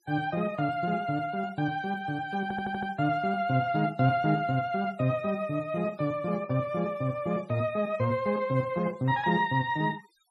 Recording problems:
noise reduction artefacts; signal-to-artefact ratio 26 dB
stutter; at 2.5 s

